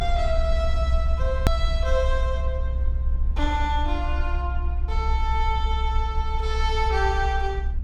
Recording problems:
rumble; below 64 Hz, SNR -2 dB
edit click; at 1.5 s

